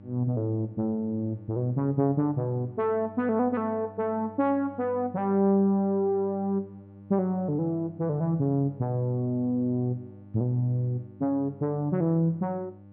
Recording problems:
electrical hum; 50 Hz, harmonics up to 900 Hz, SNR 21 dB

